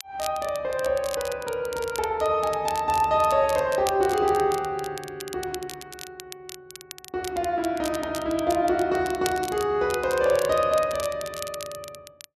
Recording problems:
crackling; vinyl, SNR 14 dB

